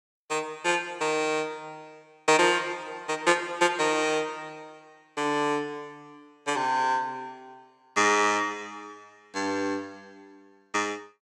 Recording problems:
none

